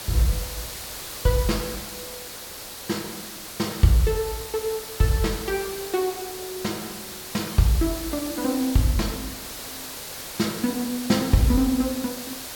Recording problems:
background hiss; slope -1 dB per octave, SNR 9 dB

